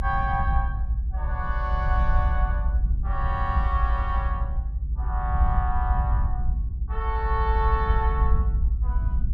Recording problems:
low-frequency rumble; below 66 Hz, strongest tone 54 Hz, SNR -4 dB

